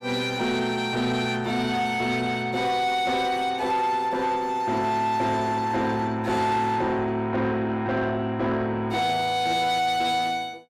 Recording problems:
distortion; soft clipping, signal-to-distortion ratio 11 dB

